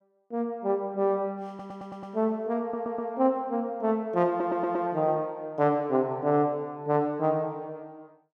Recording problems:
stutter; at 1.5 s, at 2.5 s and at 4.5 s

